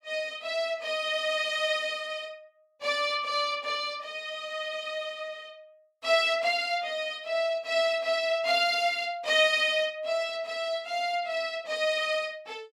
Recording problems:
none

